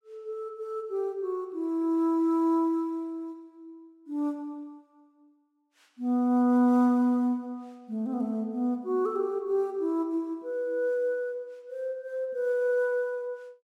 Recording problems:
none

